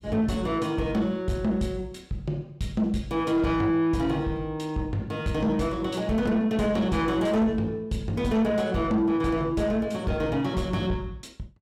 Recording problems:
distorted audio; soft clipping, signal-to-distortion ratio 11 dB

